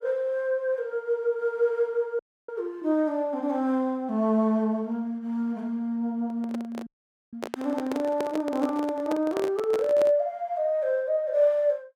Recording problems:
audio cutting out; at 2 s and at 7 s
microphone handling noise; from 6 to 10 s; peak -1 dB vs average level

